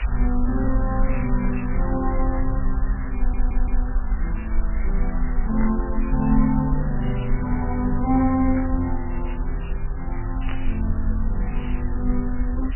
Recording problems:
lossy codec; MP3, log-spectral distance 11 dB, nothing above 7.8 kHz
hiss; SNR 14 dB
rumble; below 46 Hz, strongest tone 24 Hz, SNR 2 dB
burst of static; 4 times, first at 1.5 s; peak -4 dB vs average level
stutter; at 3 s

